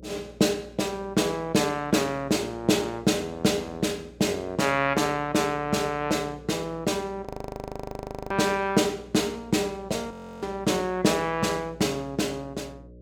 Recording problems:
hum; 60 Hz, harmonics up to 600 Hz, SNR 22 dB
audio freezing; at 7.5 s for 1 s and at 10 s

